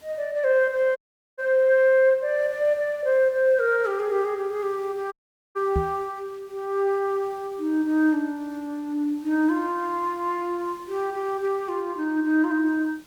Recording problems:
hiss; slope -3 dB per octave, SNR 30 dB
audio cutting out; at 1 s and at 5 s
microphone bump; at 6 s; peak 0 dB vs average level

